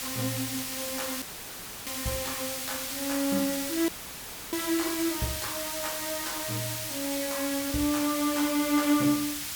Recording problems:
background hiss; slope +2 dB per octave, SNR 2 dB
dropout; at 1 s for 0.5 s and at 4 s for 0.5 s; filled with static

